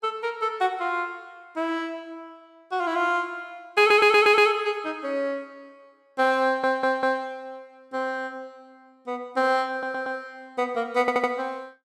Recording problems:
stutter; 4 times, first at 4 s

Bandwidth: 14.5 kHz